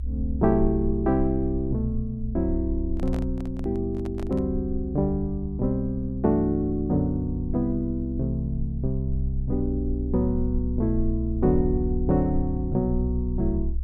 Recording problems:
rumble; below 64 Hz, strongest tone 64 Hz, SNR 6 dB
handling noise; from 3 to 4.5 s; peak -9 dB vs average level

